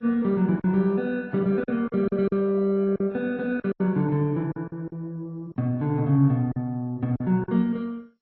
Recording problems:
codec artefacts; MP2, then AAC, log-spectral distance 2 dB
lost packets; 8% of the sound replaced, filled with silence

